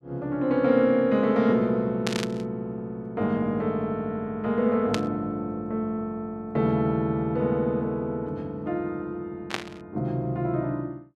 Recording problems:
static burst; at 2 s, at 5 s and at 9.5 s; peak +2 dB vs average level

